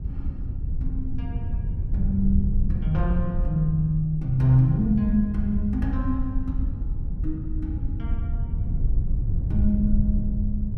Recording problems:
rumble; below 92 Hz, SNR 3 dB

